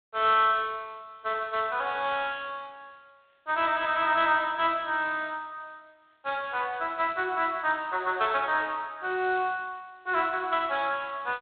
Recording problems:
telephone audio; 320 Hz to 3.7 kHz, G.726

